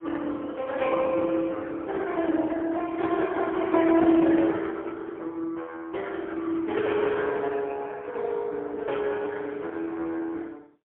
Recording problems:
telephone audio; 280 Hz to 3.4 kHz, AMR-NB, then MP3

